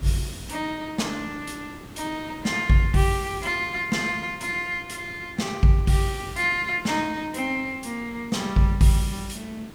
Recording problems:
hiss; SNR 18 dB

